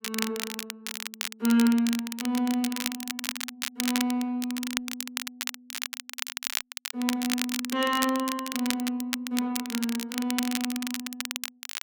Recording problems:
crackling; vinyl, SNR 4 dB

